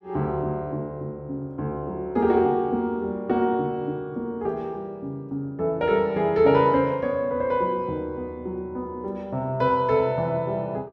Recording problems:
none

